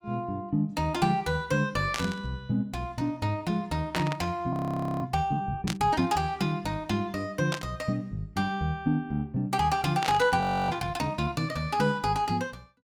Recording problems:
burst of static; 5 times, first at 2 s; peak +1 dB vs average level
frozen audio; at 4.5 s and at 10 s

